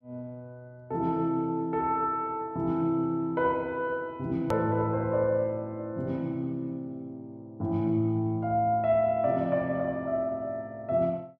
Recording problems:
edit click; at 4.5 s

